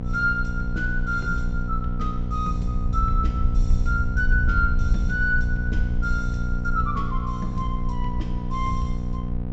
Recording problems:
treble cut off; nothing above 8 kHz
hum; 60 Hz, harmonics up to 960 Hz, SNR 3 dB
rumble; below 60 Hz, strongest tone 24 Hz, SNR 1 dB

